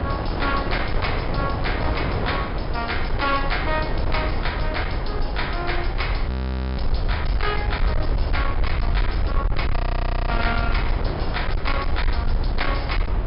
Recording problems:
low-pass filter; nothing above 5.5 kHz
distortion; hard clipping, signal-to-distortion ratio 12 dB
rumble; below 62 Hz, SNR 1 dB
wind on the microphone; below 640 Hz, SNR 2 dB
audio freezing; at 6.5 s and at 10 s for 0.5 s

